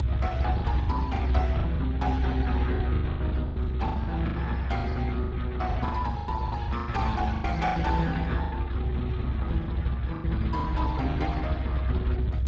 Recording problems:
lossy compression; Speex, log-spectral distance 2 dB, nothing above 7.3 kHz
rumble; below 100 Hz, strongest tone 64 Hz, SNR -1 dB
lost packets; 14% of the sound replaced, filled with the last packet

